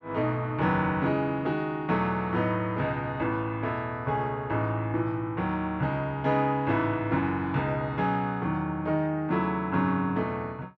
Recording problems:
none

